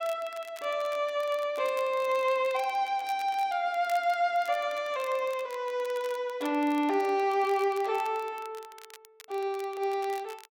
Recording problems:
crackling; vinyl, SNR 22 dB

